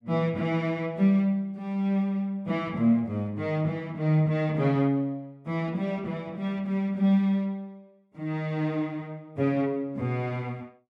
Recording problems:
none

